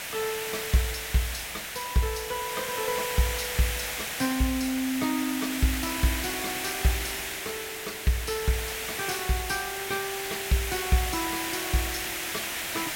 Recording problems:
hiss; SNR 1 dB

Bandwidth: 16.5 kHz